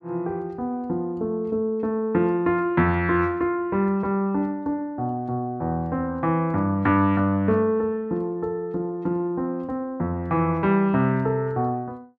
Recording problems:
none

